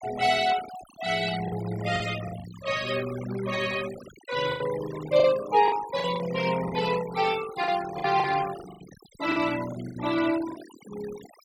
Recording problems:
noise reduction artefacts; signal-to-artefact ratio 14 dB
packet loss; 8% of the sound replaced, filled with the last packet

